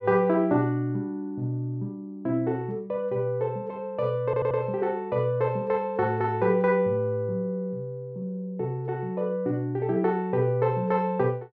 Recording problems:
audio stuttering; at 4.5 s

